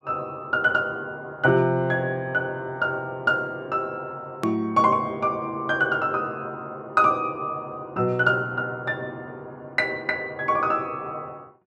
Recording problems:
click at an edit; at 4.5 s

